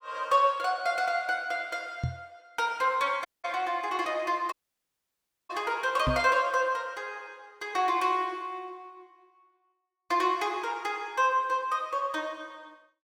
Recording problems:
microphone thump; at 2 s and at 6 s; peak +2 dB vs average level
dropout; at 3.5 s and at 4.5 s for 1 s

